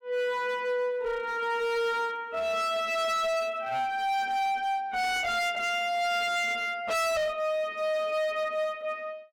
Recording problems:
distortion; hard clipping, uneven, signal-to-distortion ratio 7 dB

